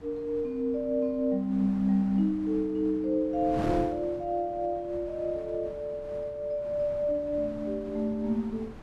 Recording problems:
wind noise; below 640 Hz, SNR 15 dB

